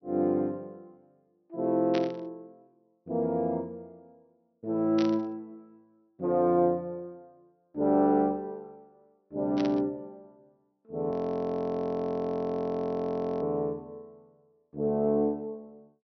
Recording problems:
treble cut off; nothing above 6 kHz
burst of static; at 2 s, at 5 s and at 9.5 s; peak -5 dB vs average level
frozen audio; at 11 s for 2.5 s

